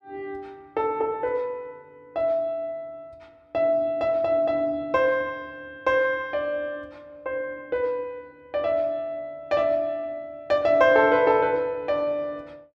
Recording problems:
none

